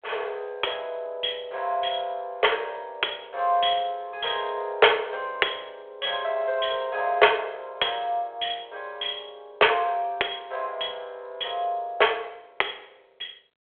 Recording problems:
telephone audio; 370 Hz to 3.4 kHz, G.726

